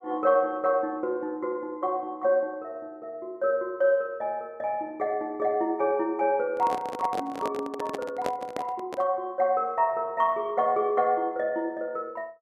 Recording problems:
microphone handling noise; from 6.5 to 9 s; peak 0 dB vs average level

